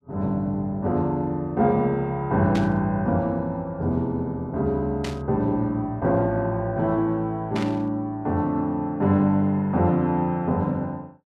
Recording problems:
static burst; at 2.5 s, at 5 s and at 7.5 s; peak -6 dB vs average level

